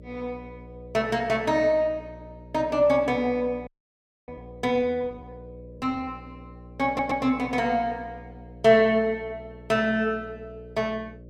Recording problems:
hum; 60 Hz, harmonics up to 600 Hz, SNR 20 dB
audio freezing; at 3.5 s for 0.5 s
stutter; at 7 s

